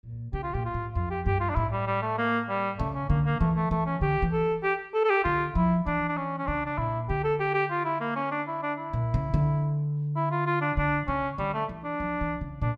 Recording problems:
none

